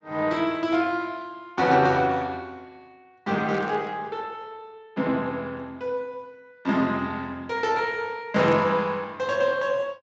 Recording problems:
lossy codec; Speex, log-spectral distance 3 dB
burst of static; at 3.5 s and at 8.5 s; peak -10 dB vs average level

